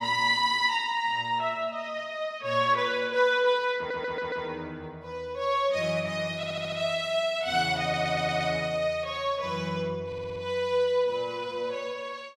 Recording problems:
stutter; 4 times, first at 4 s

